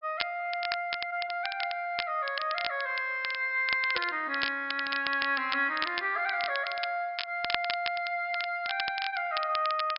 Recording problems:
treble missing; nothing above 5.5 kHz
crackling; vinyl, SNR 7 dB

